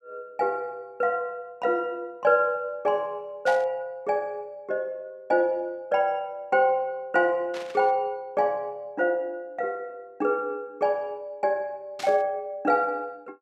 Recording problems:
static burst; at 3.5 s, at 7.5 s and at 12 s; peak -7 dB vs average level

